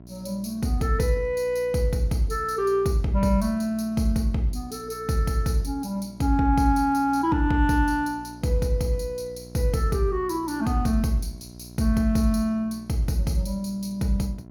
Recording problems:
electrical hum; 60 Hz, harmonics up to 1 kHz, SNR 20 dB

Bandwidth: 17.5 kHz